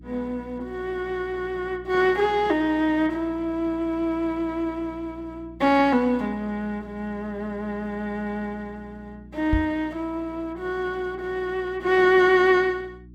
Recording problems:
electrical hum; 60 Hz, harmonics up to 360 Hz, SNR 21 dB
microphone thump; at 9.5 s; peak +3 dB vs average level

